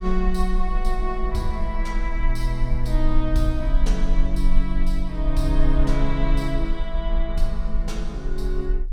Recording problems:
low-frequency rumble; below 38 Hz, strongest tone 20 Hz, SNR -1 dB

